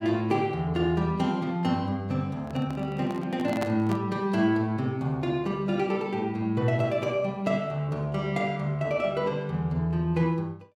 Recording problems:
handling noise; from 2.5 to 4 s; peak -1 dB vs average level

